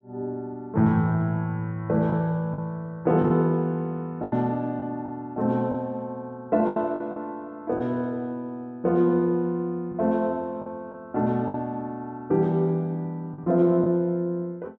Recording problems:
lost packets; 4% of the sound replaced, filled with the last packet

